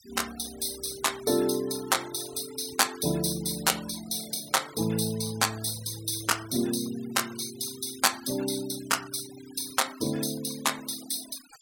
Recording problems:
noise reduction artefacts; signal-to-artefact ratio 15 dB

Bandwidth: 17.5 kHz